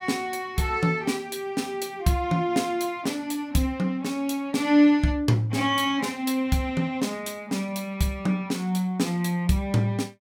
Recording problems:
none

